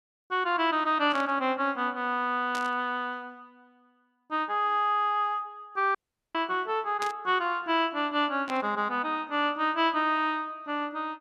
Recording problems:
static burst; 4 times, first at 1 s; peak -5 dB vs average level
audio cutting out; at 6 s

